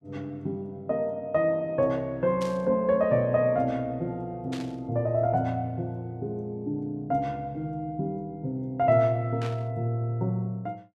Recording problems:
burst of static; at 2.5 s, at 4.5 s and at 9.5 s; peak -9 dB vs average level

